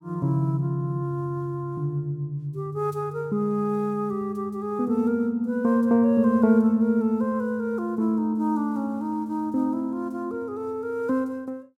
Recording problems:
none

